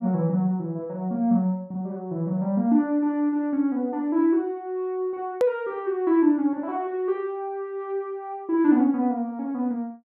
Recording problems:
click at an edit; at 5.5 s

